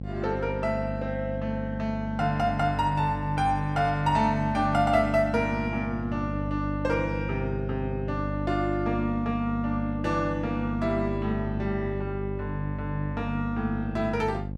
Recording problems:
hum; 50 Hz, harmonics up to 600 Hz, SNR 5 dB

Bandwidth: 14 kHz